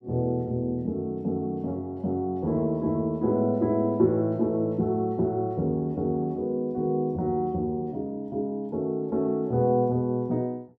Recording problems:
none

